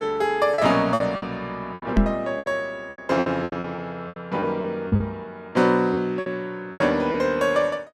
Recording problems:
packet loss; 13% of the sound replaced, filled with repeated pitch periods
knock on the microphone; at 2 s and at 5 s; peak +8 dB vs average level

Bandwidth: 14 kHz